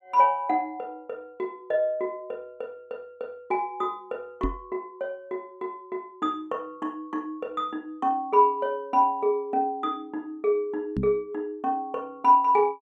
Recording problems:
microphone bump; at 4.5 s and at 11 s; peak +2 dB vs average level

